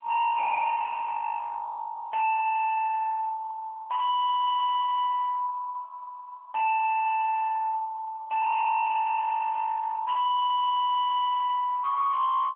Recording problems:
phone line; 990 Hz to 3.2 kHz, AMR-NB
distorted audio; hard clipping, uneven, signal-to-distortion ratio 6 dB

